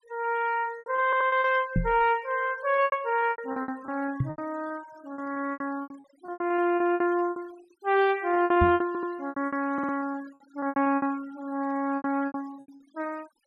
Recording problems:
noise reduction artefacts; signal-to-artefact ratio 24 dB
lost packets; 17% of the sound replaced, filled with repeated pitch periods
audio stuttering; at 1 s, at 9 s and at 9.5 s
microphone bump; at 2 s, at 4 s and at 8.5 s; peak +4 dB vs average level

